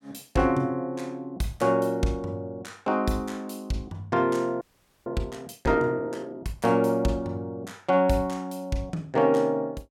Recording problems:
audio freezing; at 4.5 s

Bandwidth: 17 kHz